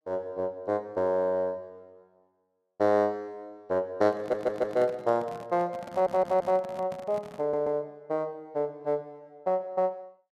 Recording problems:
microphone handling noise; from 4 to 7.5 s; peak -9 dB vs average level
audio stuttering; at 4 s, at 6 s and at 7.5 s

